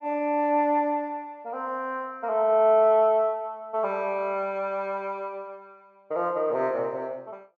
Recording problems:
none

